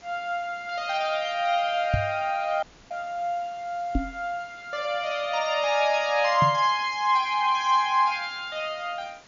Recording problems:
treble missing; nothing above 7.1 kHz
hiss; slope -2 dB per octave, SNR 26 dB
microphone bump; at 2 s, at 4 s and at 6.5 s; peak +4 dB vs average level
dropout; at 2.5 s

